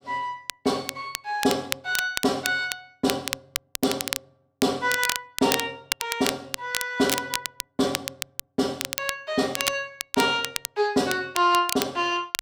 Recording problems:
crackle; vinyl, SNR 5 dB

